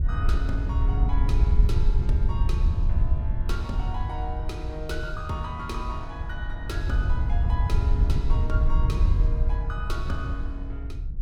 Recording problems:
wind on the microphone; below 74 Hz, SNR -8 dB

